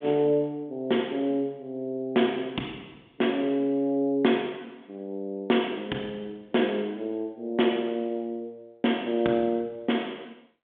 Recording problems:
phone line; 170 Hz to 3.6 kHz, G.726

